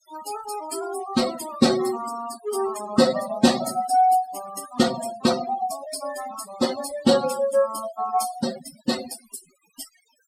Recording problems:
noise reduction artefacts; signal-to-artefact ratio 12 dB

